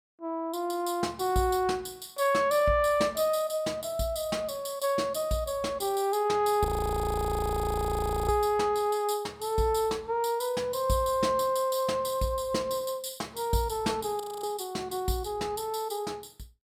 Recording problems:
audio freezing; at 6.5 s for 1.5 s and at 14 s

